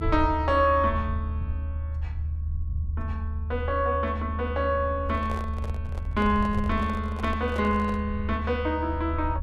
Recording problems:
low-frequency rumble; below 78 Hz, strongest tone 76 Hz, SNR 5 dB
handling noise; from 5 to 8 s; peak -7 dB vs average level

